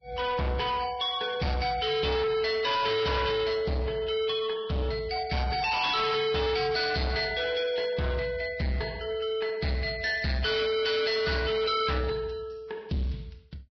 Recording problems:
codec artefacts; Vorbis, log-spectral distance 5 dB
distortion; soft clipping, signal-to-distortion ratio 6 dB

